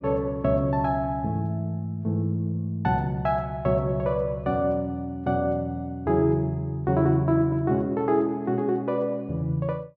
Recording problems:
none

